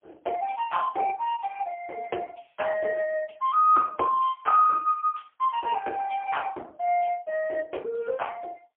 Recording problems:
phone line; 320 Hz to 3.1 kHz, AMR-NB, then MP3

